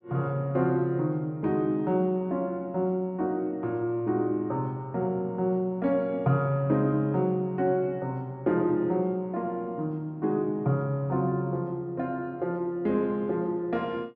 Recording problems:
none

